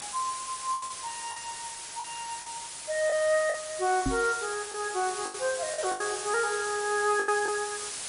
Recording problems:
codec artefacts; MP3, log-spectral distance 19 dB
hiss; slope +1 dB per octave, SNR 7 dB
packet loss; 8% of the sound replaced, filled with the last packet
microphone bump; at 4 s; peak +3 dB vs average level

